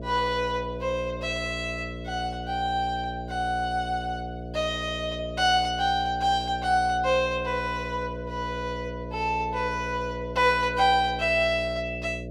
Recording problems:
hum; 60 Hz, harmonics up to 660 Hz, SNR 10 dB

